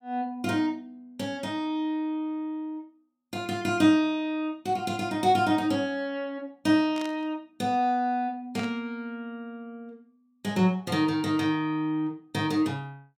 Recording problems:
static burst; at 7 s and at 8.5 s; peak -10 dB vs average level

